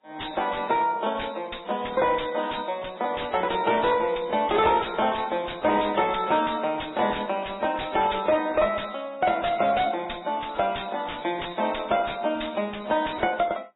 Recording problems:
codec artefacts; AAC, then MP3, log-spectral distance 13 dB, nothing above 3.9 kHz
distortion; hard clipping, uneven, signal-to-distortion ratio 9 dB

